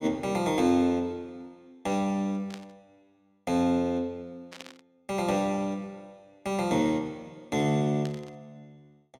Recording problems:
burst of static; at 2.5 s, at 4.5 s and at 8 s; peak -9 dB vs average level

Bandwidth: 16 kHz